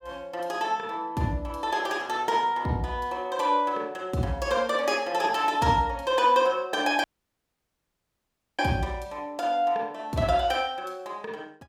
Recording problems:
dropout; at 7 s for 1.5 s

